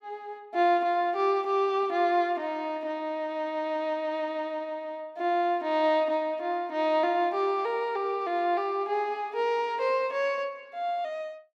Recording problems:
none

